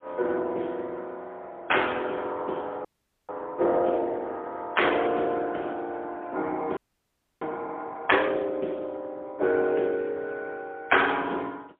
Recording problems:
phone line; 280 Hz to 3.4 kHz, AMR-NB, then MP3
frozen audio; at 3 s and at 7 s for 0.5 s

